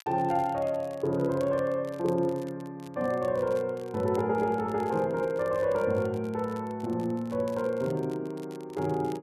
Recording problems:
crackling; vinyl, SNR 26 dB

